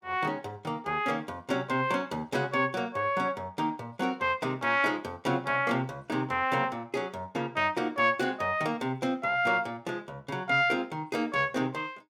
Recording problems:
none

